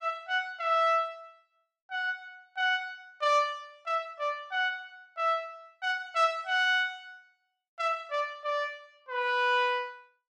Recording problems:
none

